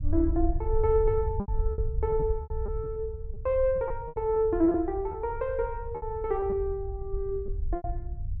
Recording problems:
low-frequency rumble; below 70 Hz, SNR 6 dB
packet loss; 9% of the sound replaced, filled with repeated pitch periods

